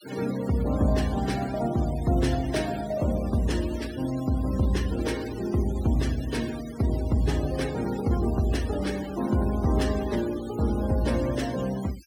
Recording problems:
denoising artefacts; signal-to-artefact ratio 16 dB

